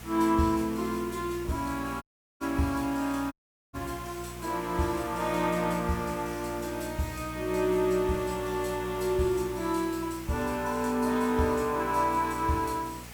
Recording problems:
hum; 60 Hz, harmonics up to 720 Hz, SNR 15 dB
hiss; SNR 16 dB
audio cutting out; at 2 s and at 3.5 s

